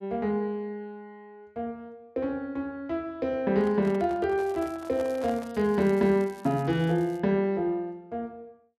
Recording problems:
handling noise; from 3.5 to 5.5 s; peak -9 dB vs average level
crackling; from 4.5 to 7 s; loose cable, SNR 27 dB

